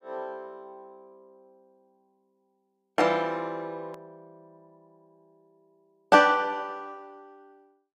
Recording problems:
click at an edit; at 4 s

